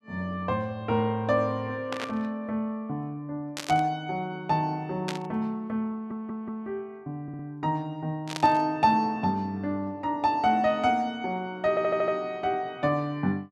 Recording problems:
burst of static; 4 times, first at 2 s; peak -1 dB vs average level
stutter; at 6 s, at 7 s and at 12 s

